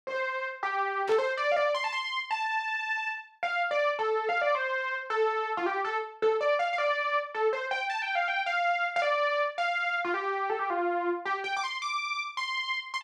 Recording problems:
burst of static; at 1 s; peak -9 dB vs average level

